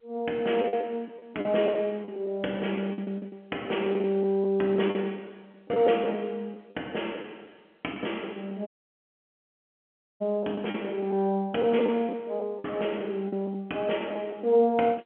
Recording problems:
phone line; 220 Hz to 3.3 kHz, G.711
lost packets; 9% of the sound replaced, filled with the last packet
dropout; at 8.5 s for 1.5 s

